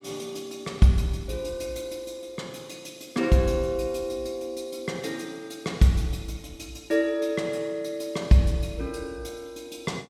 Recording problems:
none

